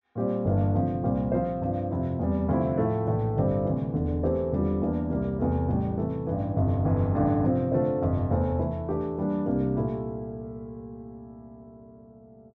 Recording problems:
none

